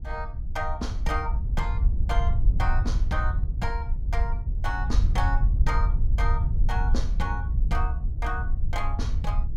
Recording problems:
wind on the microphone; below 66 Hz, SNR -6 dB

